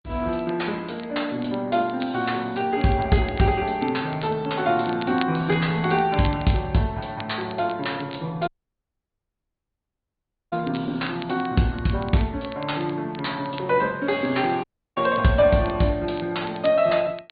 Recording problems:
low-pass filter; nothing above 4.4 kHz
lossy compression; Opus, log-spectral distance 3 dB
crackling; vinyl, SNR 20 dB
dropout; at 8.5 s for 2 s and at 15 s

